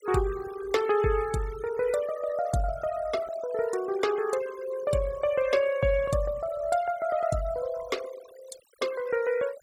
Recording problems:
denoising artefacts; signal-to-artefact ratio 17 dB

